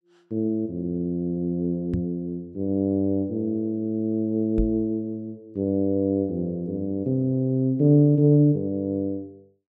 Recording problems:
microphone thump; at 2 s and at 4.5 s; peak +1 dB vs average level

